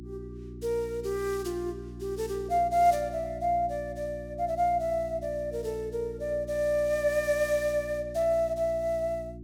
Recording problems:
hum; 60 Hz, harmonics up to 360 Hz, SNR 14 dB

